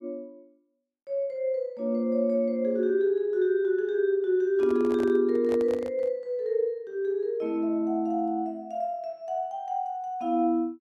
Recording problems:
microphone handling noise; from 4.5 to 6 s; peak -9 dB vs average level

